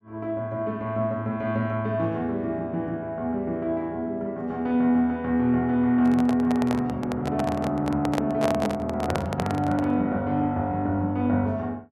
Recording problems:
microphone handling noise; from 6 to 10 s; peak +2 dB vs average level

